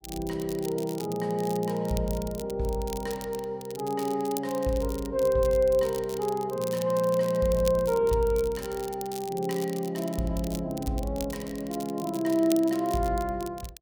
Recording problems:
crackle; vinyl, SNR 15 dB

